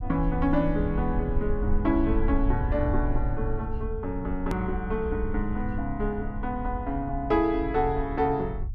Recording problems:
rumble; below 64 Hz, strongest tone 22 Hz, SNR 5 dB
edit click; at 4.5 s

